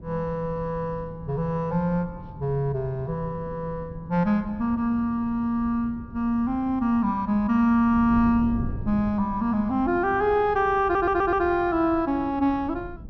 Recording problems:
treble cut off; nothing above 6.2 kHz
wind on the microphone; below 170 Hz, SNR 15 dB
stutter; at 11 s

